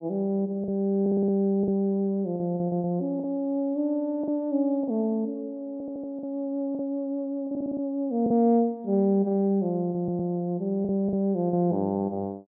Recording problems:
low-pass filter; nothing above 4 kHz
lost packets; 6% of the sound replaced, filled with the last packet
audio stuttering; 4 times, first at 1 s

